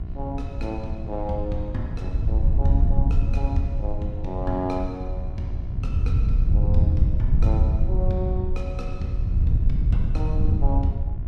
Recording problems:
hum; 60 Hz, harmonics up to 1.1 kHz, SNR 11 dB
wind on the microphone; below 86 Hz, SNR -7 dB

